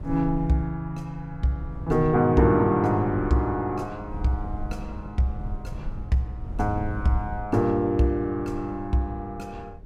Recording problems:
wind noise; below 94 Hz, SNR 13 dB

